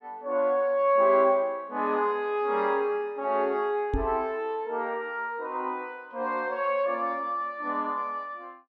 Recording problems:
knock on the microphone; at 4 s; peak +1 dB vs average level

